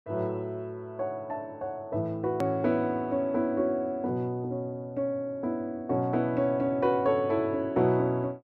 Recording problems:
edit click; at 2.5 s

